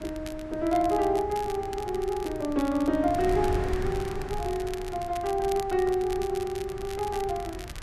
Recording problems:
wind on the microphone; below 190 Hz, SNR 11 dB
crackle; vinyl, SNR 17 dB

